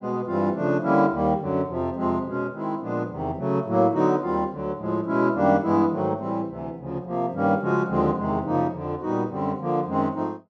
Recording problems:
none

